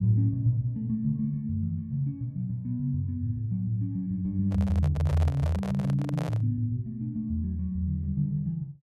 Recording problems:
handling noise; from 4.5 to 6.5 s; peak -6 dB vs average level

